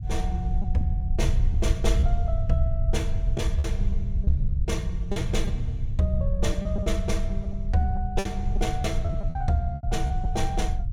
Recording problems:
low-frequency rumble; below 76 Hz, SNR -2 dB
packet loss; 6% of the sound replaced, filled with repeated pitch periods

